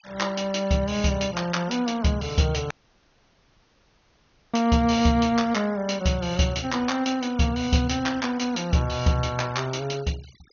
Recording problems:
treble cut off; nothing above 6.5 kHz
noise reduction artefacts; signal-to-artefact ratio 21 dB
audio cutting out; at 2.5 s for 2 s

